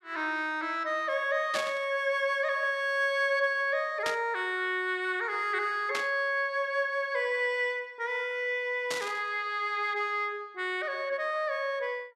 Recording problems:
burst of static; 4 times, first at 1.5 s; peak 0 dB vs average level

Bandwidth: 14 kHz